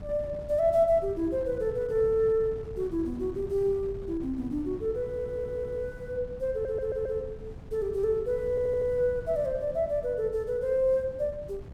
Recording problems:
wind noise; below 180 Hz, SNR 15 dB
stutter; at 5 s, at 6.5 s and at 8.5 s

